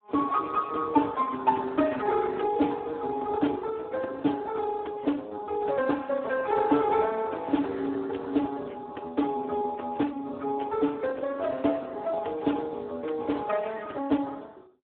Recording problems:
phone line; 240 Hz to 3.6 kHz, Speex

